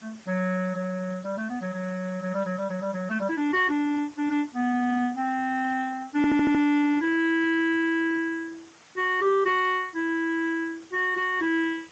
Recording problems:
lossy codec; Speex, log-spectral distance 5 dB
hiss; slope -2 dB per octave, SNR 26 dB
stutter; at 6 s

